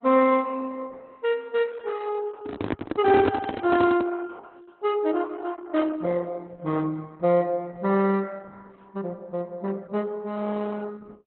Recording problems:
lossy codec; Opus, log-spectral distance 3 dB, nothing above 3.8 kHz
microphone handling noise; from 2.5 to 4 s; peak +4 dB vs average level

